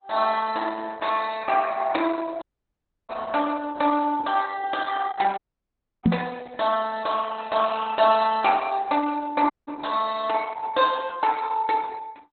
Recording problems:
lossy codec; Opus, log-spectral distance 4 dB, nothing above 4 kHz
audio cutting out; at 2.5 s for 0.5 s, at 5.5 s for 0.5 s and at 9.5 s
microphone thump; at 6 s; peak +9 dB vs average level

